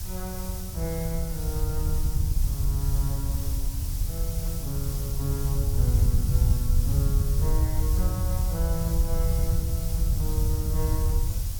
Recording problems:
background hiss; SNR 3 dB
wind on the microphone; below 86 Hz, SNR -7 dB

